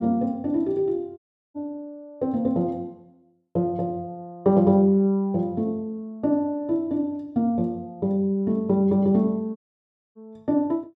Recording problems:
dropout; at 1 s and at 9.5 s for 0.5 s

